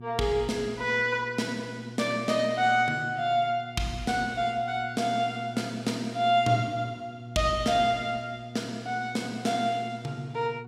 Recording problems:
electrical hum; 60 Hz, harmonics up to 480 Hz, SNR 15 dB

